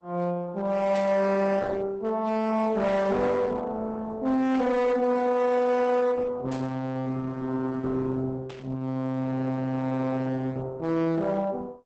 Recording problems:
lossy compression; Opus, log-spectral distance 2 dB, nothing above 8 kHz
distortion; hard clipping, uneven, signal-to-distortion ratio 10 dB
static burst; 4 times, first at 1 s; peak -12 dB vs average level

